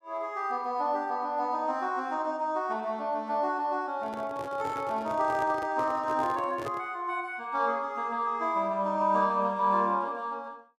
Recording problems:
handling noise; from 4 to 7 s; peak -4 dB vs average level

